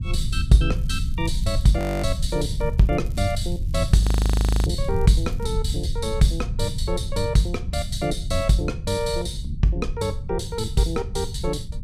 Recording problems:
low-frequency rumble; below 100 Hz, SNR 5 dB
crackling; from 0.5 to 5.5 s; loose cable, SNR 29 dB
audio freezing; at 2 s and at 4 s for 0.5 s

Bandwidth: 14.5 kHz